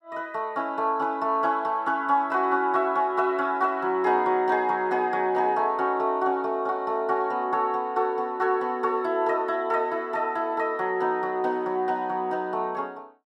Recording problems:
none

